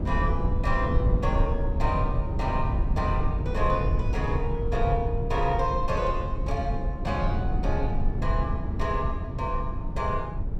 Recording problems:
low-frequency rumble; below 110 Hz, SNR -2 dB

